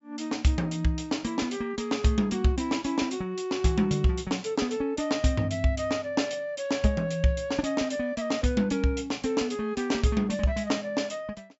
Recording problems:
treble missing; nothing above 8 kHz

